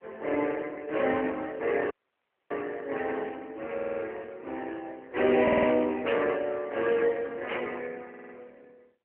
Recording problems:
telephone audio; 280 Hz to 3.1 kHz, AMR-NB
audio cutting out; at 2 s for 0.5 s
stutter; at 3.5 s, at 5.5 s and at 8 s
static burst; at 6 s and at 7.5 s; peak -2 dB vs average level

